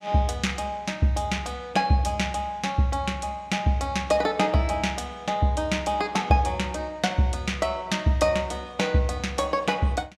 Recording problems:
none

